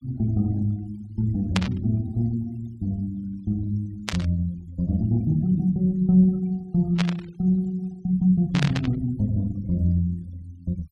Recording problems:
noise reduction artefacts; signal-to-artefact ratio 27 dB
static burst; 4 times, first at 1.5 s; peak +3 dB vs average level

